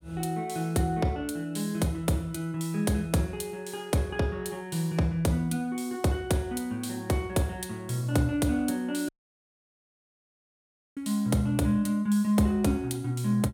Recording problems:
dropout; at 9 s for 2 s

